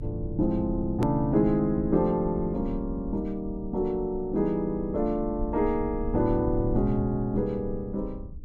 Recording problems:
rumble; below 86 Hz, SNR 11 dB
hard cut with a click; at 1 s

